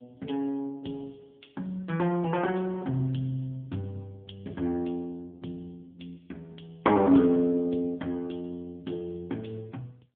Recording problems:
phone line; 190 Hz to 3.7 kHz, AMR-NB

